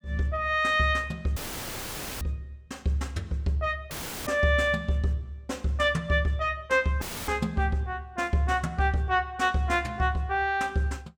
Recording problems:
audio cutting out; at 1.5 s for 1 s, at 4 s and at 7 s; filled with static

